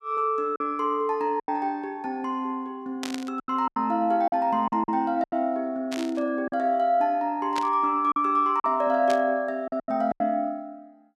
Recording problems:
lost packets; 7% of the sound replaced, filled with silence
burst of static; 4 times, first at 3 s; peak -4 dB vs average level

